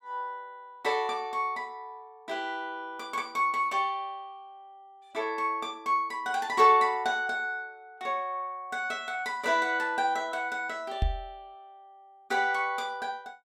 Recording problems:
microphone bump; at 11 s; peak +4 dB vs average level

